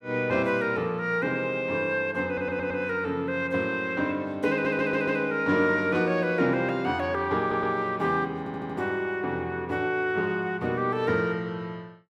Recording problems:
stutter; 4 times, first at 2.5 s

